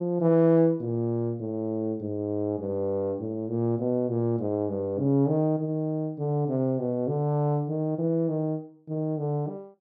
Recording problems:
none

